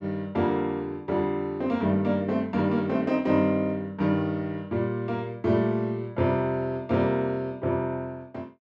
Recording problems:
none

